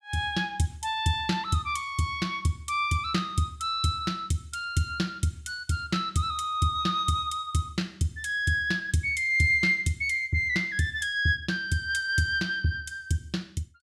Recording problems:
none

